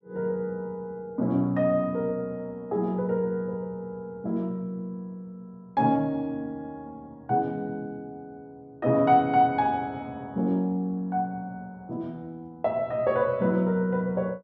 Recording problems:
none

